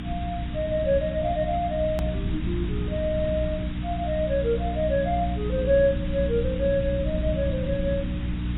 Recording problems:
lossy codec; AAC, log-spectral distance 12 dB
hum; 60 Hz, harmonics up to 300 Hz, SNR 4 dB
background hiss; SNR 17 dB
low-frequency rumble; below 150 Hz, SNR 8 dB
hard cut with a click; at 2 s

